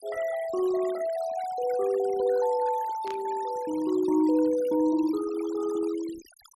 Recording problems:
denoising artefacts; signal-to-artefact ratio 18 dB
static burst; at 3 s; peak -12 dB vs average level

